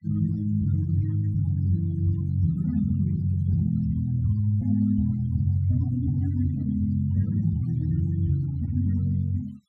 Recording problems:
noise reduction artefacts; signal-to-artefact ratio 25 dB

